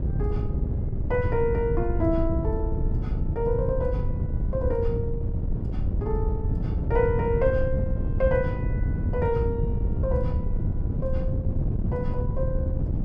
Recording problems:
wind noise; below 130 Hz, SNR -2 dB

